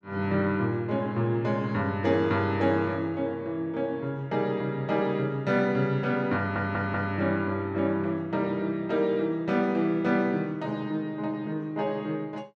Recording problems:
audio stuttering; at 6.5 s

